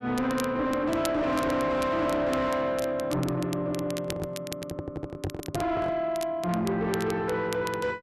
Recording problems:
distortion; soft clipping, signal-to-distortion ratio 7 dB
crackling; vinyl, SNR 15 dB
handling noise; from 4 to 6 s; peak 0 dB vs average level

